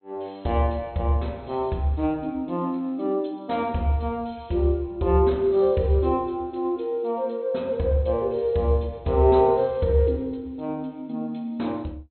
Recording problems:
treble missing; nothing above 4.1 kHz

